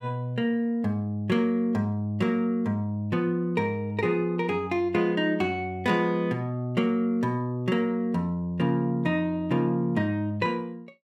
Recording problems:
none

